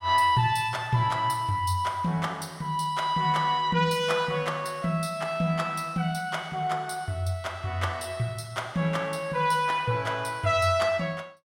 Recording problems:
none

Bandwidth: 16 kHz